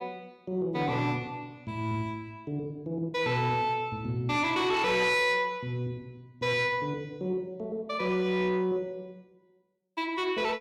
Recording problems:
distorted audio; soft clipping, signal-to-distortion ratio 11 dB

